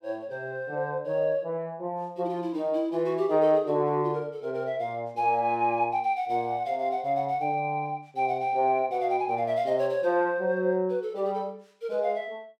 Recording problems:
none

